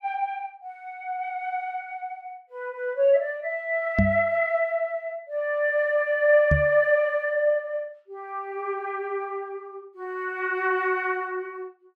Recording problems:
microphone thump; at 4 s and at 6.5 s; peak +6 dB vs average level

